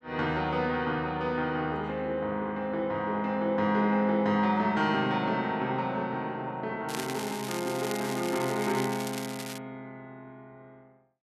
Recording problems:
crackling; from 7 to 9.5 s; loose cable, SNR 10 dB

